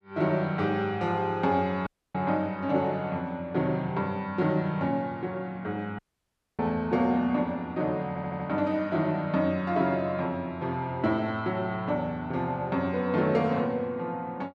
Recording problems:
dropout; at 2 s and at 6 s for 0.5 s
stutter; at 8 s

